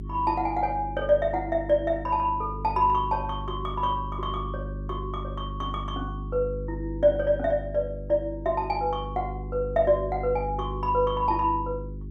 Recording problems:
hum; 50 Hz, harmonics up to 400 Hz, SNR 9 dB

